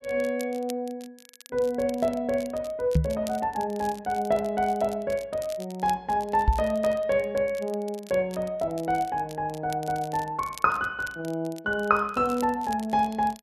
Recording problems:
crackling; vinyl, SNR 20 dB
microphone thump; at 3 s and at 6.5 s; peak +8 dB vs average level

